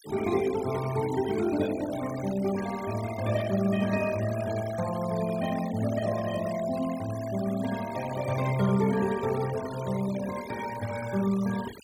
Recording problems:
denoising artefacts; signal-to-artefact ratio 14 dB

